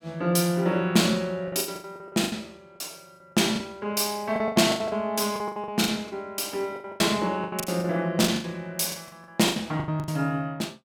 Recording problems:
lost packets; 17% of the sound replaced, filled with the last packet

